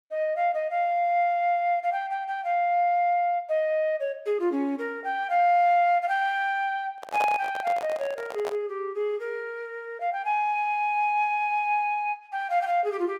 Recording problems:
microphone handling noise; from 7 to 8.5 s; peak -1 dB vs average level

